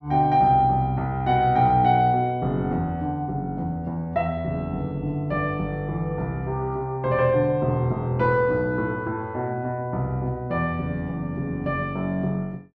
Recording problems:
none

